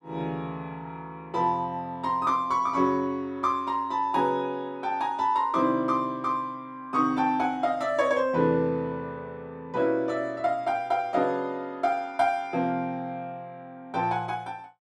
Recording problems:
none

